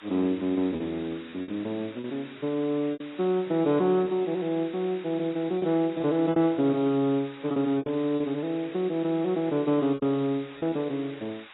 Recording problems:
lossy codec; AAC, log-spectral distance 11 dB, nothing above 3.8 kHz
background hiss; SNR 20 dB
lost packets; 6% of the sound replaced, filled with repeated pitch periods

